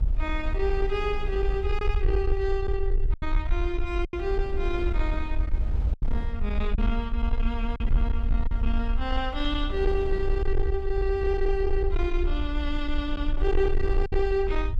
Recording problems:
distorted audio; soft clipping, signal-to-distortion ratio 12 dB
low-frequency rumble; below 54 Hz, strongest tone 22 Hz, SNR 0 dB
wind noise; below 390 Hz, SNR 14 dB
lost packets; 3% of the sound replaced, filled with silence

